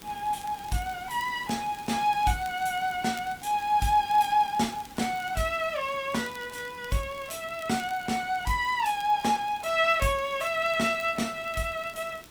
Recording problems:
lossy codec; Opus, log-spectral distance 4 dB, nothing above 19 kHz
hiss; SNR 21 dB
crackle; vinyl, SNR 24 dB

